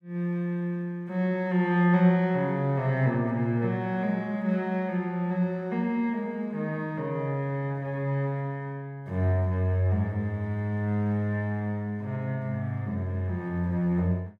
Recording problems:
none

